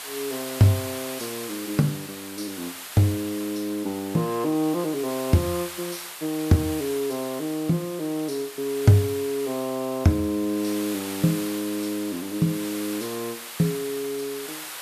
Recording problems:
hiss; SNR 10 dB

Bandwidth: 14.5 kHz